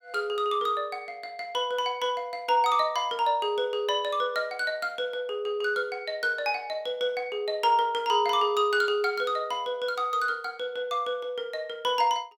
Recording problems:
none

